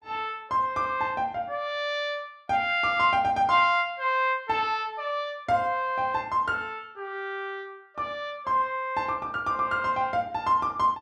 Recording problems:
none

